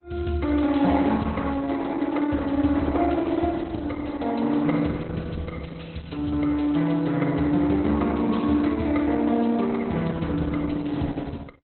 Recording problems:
lossy compression; Opus, log-spectral distance 5 dB, nothing above 4.1 kHz

